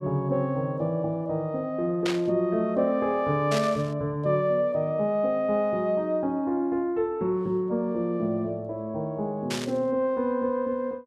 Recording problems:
burst of static; at 2 s, at 3.5 s and at 9.5 s; peak -2 dB vs average level

